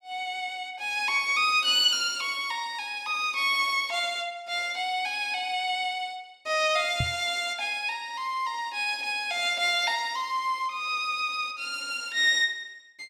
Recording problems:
knock on the microphone; at 7 s; peak 0 dB vs average level

